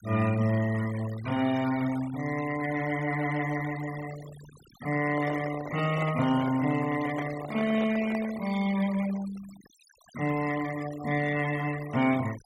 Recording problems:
noise reduction artefacts; signal-to-artefact ratio 16 dB
handling noise; from 5 to 8.5 s; peak -5 dB vs average level

